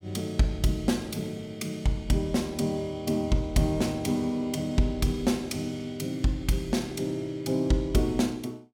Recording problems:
none

